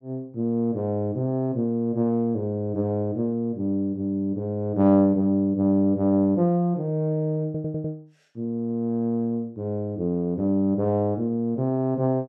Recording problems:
audio stuttering; at 7.5 s

